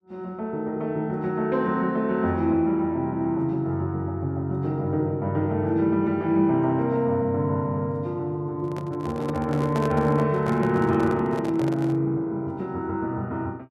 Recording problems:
handling noise; from 8.5 to 12 s; peak -2 dB vs average level

